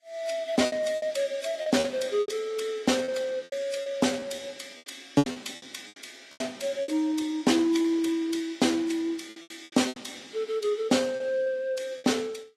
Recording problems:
lossy compression; AAC, then Vorbis, log-spectral distance 4 dB, nothing above 12.3 kHz
packet loss; 11% of the sound replaced, filled with repeated pitch periods

